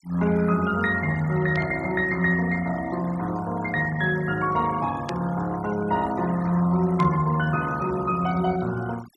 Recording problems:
noise reduction artefacts; signal-to-artefact ratio 18 dB
burst of static; at 1.5 s, at 5 s and at 7 s; peak -8 dB vs average level

